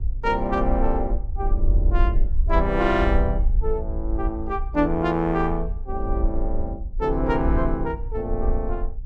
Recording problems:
rumble; below 54 Hz, SNR 2 dB

